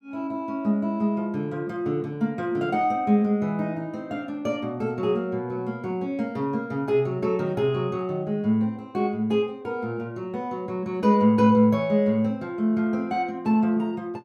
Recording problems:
none

